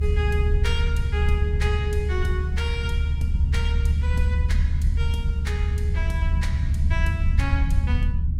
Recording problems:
rumble; below 76 Hz, strongest tone 74 Hz, SNR -8 dB
wind noise; below 110 Hz, SNR 10 dB

